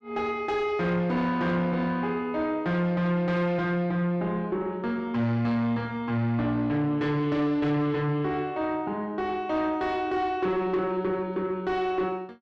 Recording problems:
distorted audio; soft clipping, signal-to-distortion ratio 11 dB

